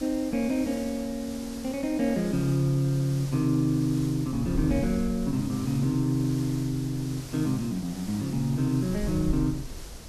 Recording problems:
hiss; SNR 16 dB
wind on the microphone; below 100 Hz, SNR 14 dB

